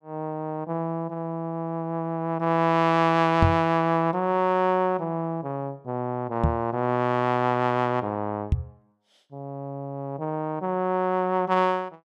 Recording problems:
microphone thump; at 3.5 s, at 6.5 s and at 8.5 s; peak +7 dB vs average level

